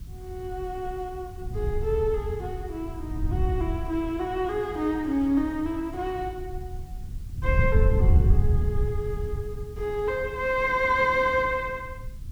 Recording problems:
background hiss; slope +1 dB per octave, SNR 29 dB
wind on the microphone; below 96 Hz, SNR 1 dB

